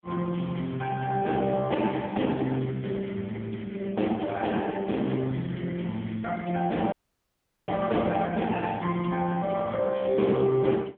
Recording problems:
phone line; 190 Hz to 3.4 kHz, AMR-NB
dropout; at 7 s for 1 s

